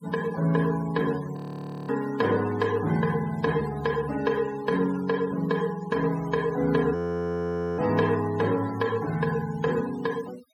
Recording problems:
noise reduction artefacts; signal-to-artefact ratio 16 dB
frozen audio; at 1.5 s for 0.5 s and at 7 s for 1 s

